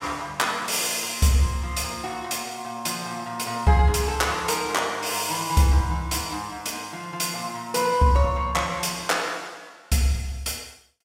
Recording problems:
none

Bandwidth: 16 kHz